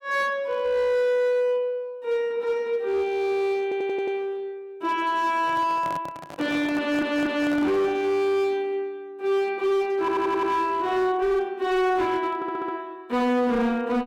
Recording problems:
distorted audio; hard clipping, signal-to-distortion ratio 12 dB
audio stuttering; 4 times, first at 3.5 s
handling noise; from 5.5 to 8 s; peak -8 dB vs average level

